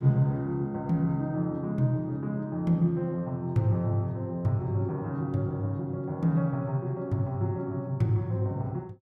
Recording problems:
none

